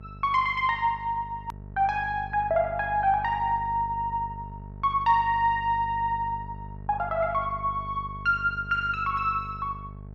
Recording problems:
hum; 50 Hz, harmonics up to 650 Hz, SNR 15 dB
click at an edit; at 1.5 s

